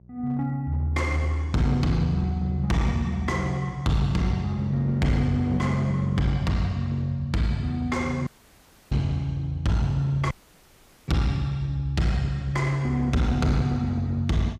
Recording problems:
distortion; hard clipping, uneven, signal-to-distortion ratio 9 dB
electrical hum; 60 Hz, harmonics up to 540 Hz, SNR 26 dB
audio cutting out; at 8.5 s for 0.5 s and at 10 s for 1 s

